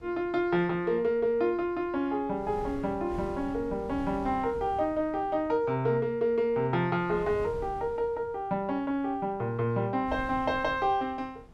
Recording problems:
wind on the microphone; below 280 Hz, SNR 18 dB

